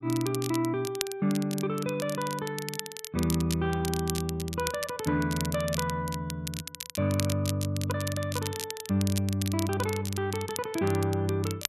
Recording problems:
crackle; vinyl, SNR 8 dB

